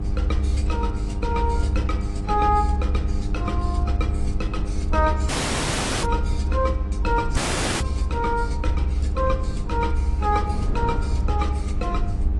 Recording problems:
lossy compression; AAC, log-spectral distance 3 dB
electrical hum; 50 Hz, harmonics up to 1.2 kHz, SNR 8 dB
low-frequency rumble; below 70 Hz, SNR -2 dB
wind noise; below 170 Hz, SNR 12 dB
dropout; at 5.5 s for 0.5 s and at 7.5 s

